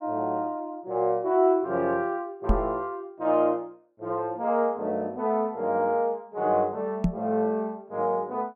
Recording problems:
knock on the microphone; at 2.5 s and at 7 s; peak +6 dB vs average level

